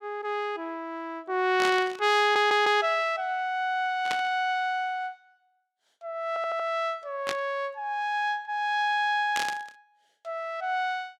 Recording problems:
burst of static; 4 times, first at 1.5 s; peak 0 dB vs average level
stutter; at 2 s and at 6.5 s

